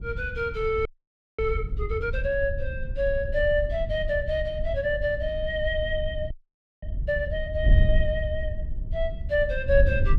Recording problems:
wind on the microphone; below 74 Hz, SNR 3 dB
frozen audio; at 1 s for 0.5 s and at 6.5 s for 0.5 s

